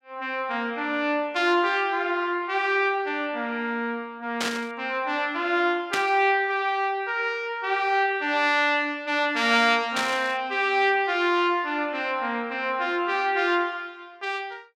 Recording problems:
burst of static; at 4.5 s, at 6 s and at 10 s; peak 0 dB vs average level

